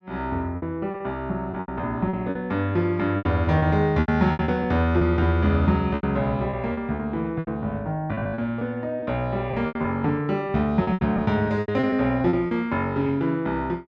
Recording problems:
lost packets; 13% of the sound replaced, filled with repeated pitch periods

